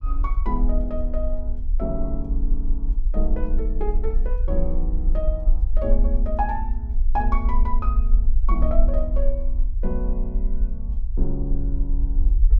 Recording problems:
low-frequency rumble; below 44 Hz, strongest tone 20 Hz, SNR -6 dB

